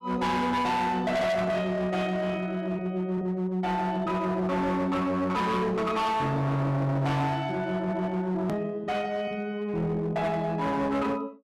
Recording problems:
distortion; hard clipping, uneven, signal-to-distortion ratio 7 dB
edit click; at 8.5 s

